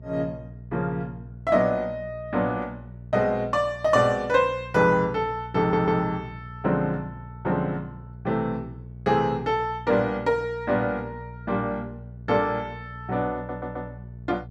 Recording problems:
electrical hum; 60 Hz, harmonics up to 480 Hz, SNR 16 dB
audio stuttering; at 5.5 s and at 13 s

